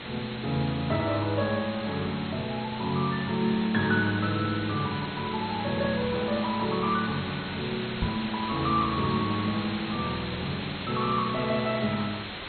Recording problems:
lossy codec; MP2, log-spectral distance 17 dB, nothing above 3.4 kHz
hiss; SNR 7 dB
microphone bump; at 8 s; peak +3 dB vs average level

